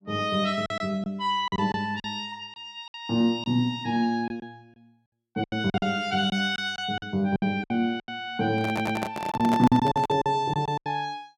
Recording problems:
lost packets; 11% of the sound replaced, filled with silence
handling noise; from 8.5 to 10 s; peak 0 dB vs average level
stutter; at 8.5 s

